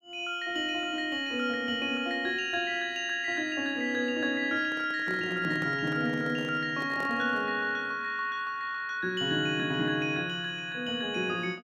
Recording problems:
handling noise; from 4.5 to 7.5 s; peak -8 dB vs average level

